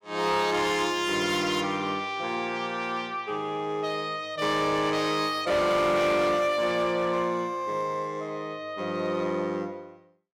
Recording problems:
distortion; hard clipping, signal-to-distortion ratio 12 dB

